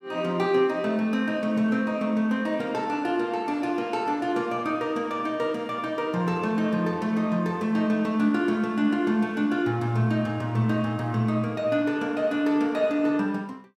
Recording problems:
none

